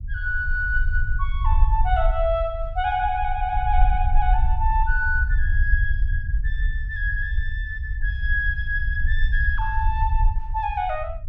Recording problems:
rumble; below 60 Hz, SNR 0 dB

